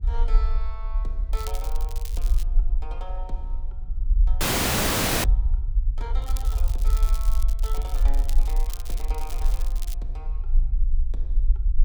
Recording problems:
rumble; below 44 Hz, SNR -14 dB
wind on the microphone; below 64 Hz, SNR 3 dB
crackle; from 1.5 to 2.5 s and from 6 to 10 s; loose cable, SNR 1 dB
audio freezing; at 4.5 s for 1 s

